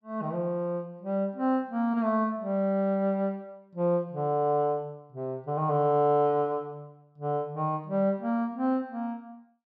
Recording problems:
none

